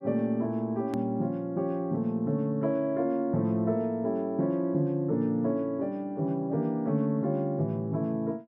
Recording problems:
edit click; at 1 s

